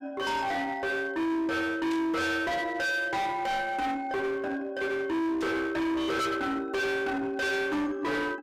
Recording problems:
distorted audio; hard clipping, uneven, signal-to-distortion ratio 6 dB
static burst; at 2 s and at 5.5 s; peak -10 dB vs average level

